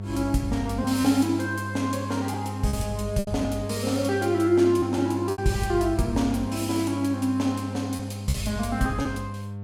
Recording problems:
hum; 50 Hz, harmonics up to 900 Hz, SNR 8 dB
packet loss; 4% of the sound replaced, filled with repeated pitch periods

